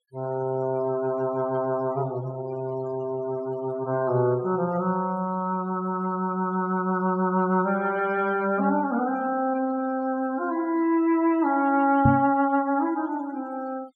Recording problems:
noise reduction artefacts; signal-to-artefact ratio 21 dB
microphone bump; at 12 s; peak +8 dB vs average level

